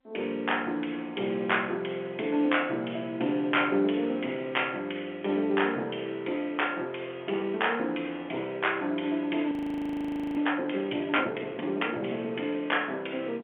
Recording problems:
telephone audio; 220 Hz to 3.4 kHz, G.711
frozen audio; at 9.5 s for 1 s

